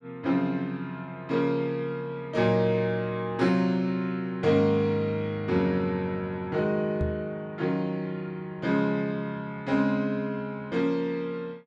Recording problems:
microphone bump; at 7 s; peak 0 dB vs average level

